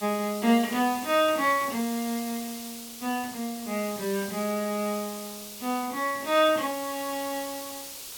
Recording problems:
hiss; SNR 11 dB

